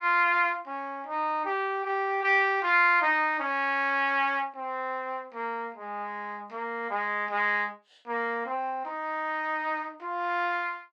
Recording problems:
none

